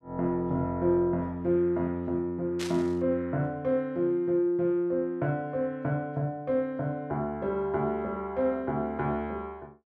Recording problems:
burst of static; at 2.5 s; peak -4 dB vs average level

